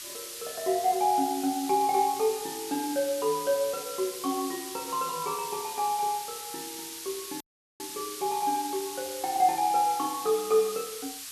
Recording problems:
hiss; slope +5 dB per octave, SNR 9 dB
dropout; at 7.5 s

